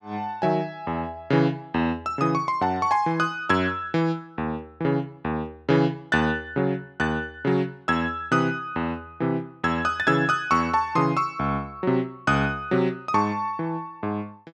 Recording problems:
none

